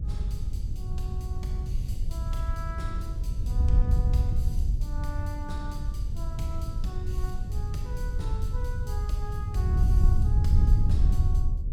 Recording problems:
hum; 60 Hz, harmonics up to 540 Hz, SNR 11 dB
wind on the microphone; below 82 Hz, SNR -12 dB

